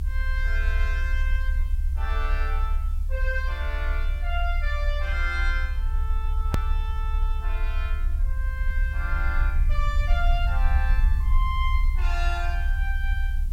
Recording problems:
hiss; slope -1 dB per octave, SNR 24 dB
rumble; below 66 Hz, strongest tone 30 Hz, SNR -6 dB
edit click; at 6.5 s

